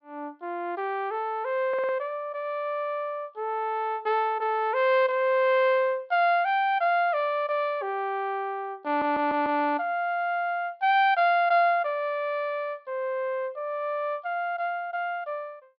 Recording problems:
low-pass filter; nothing above 5.5 kHz
stutter; at 1.5 s and at 9 s

